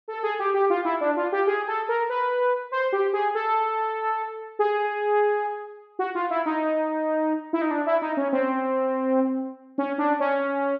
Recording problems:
none

